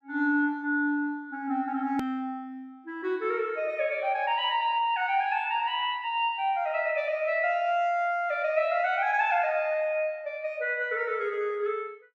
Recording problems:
edit click; at 2 s

